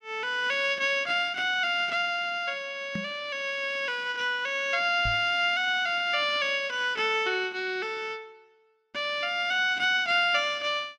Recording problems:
microphone bump; at 3 s and at 5 s; peak -4 dB vs average level

